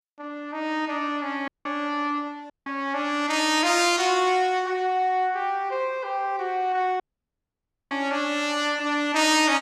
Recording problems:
audio cutting out; at 1.5 s, at 2.5 s and at 7 s for 1 s
burst of static; at 3.5 s; peak -14 dB vs average level

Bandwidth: 14.5 kHz